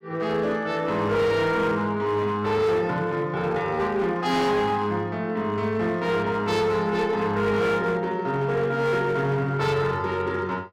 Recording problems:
distortion; hard clipping, uneven, signal-to-distortion ratio 11 dB

